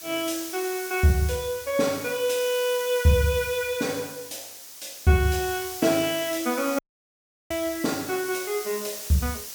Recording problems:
hiss; SNR 10 dB
dropout; at 7 s for 0.5 s

